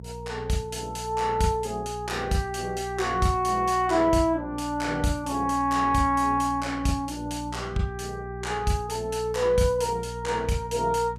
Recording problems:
electrical hum; 60 Hz, harmonics up to 480 Hz, SNR 14 dB

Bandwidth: 15 kHz